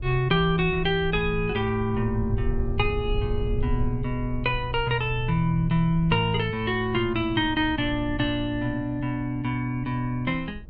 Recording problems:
low-frequency rumble; below 78 Hz, SNR 10 dB

